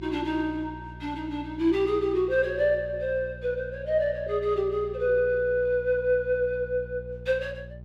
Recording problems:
electrical hum; 60 Hz, harmonics up to 420 Hz, SNR 16 dB

